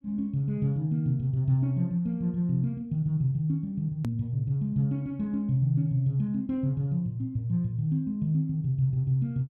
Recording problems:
edit click; at 4 s

